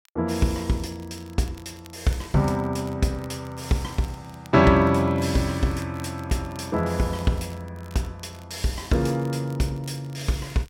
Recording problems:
crackling; vinyl, SNR 27 dB

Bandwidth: 16 kHz